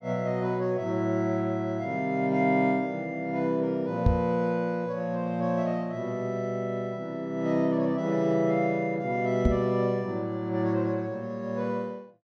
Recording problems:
microphone thump; at 4 s and at 9.5 s; peak +8 dB vs average level

